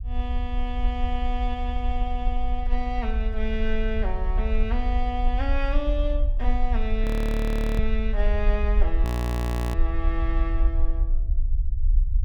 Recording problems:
low-frequency rumble; below 54 Hz, SNR -5 dB
audio freezing; at 7 s for 1 s and at 9 s for 0.5 s

